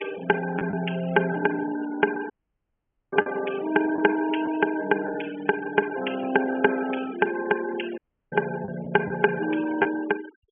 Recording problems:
treble missing; nothing above 3.2 kHz
noise reduction artefacts; signal-to-artefact ratio 15 dB
lost packets; 2% of the sound replaced, filled with the last packet
audio cutting out; at 2.5 s for 1 s and at 8 s

